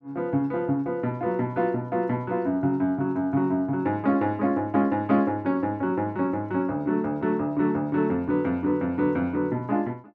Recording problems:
none

